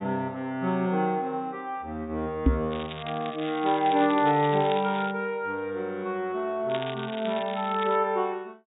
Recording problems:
low-pass filter; nothing above 4 kHz
microphone bump; at 2.5 s; peak +10 dB vs average level
crackle; from 2.5 to 5 s and from 6.5 to 8 s; loose cable, SNR 13 dB

